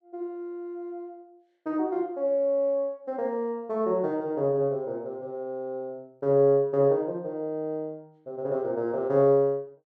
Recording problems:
none

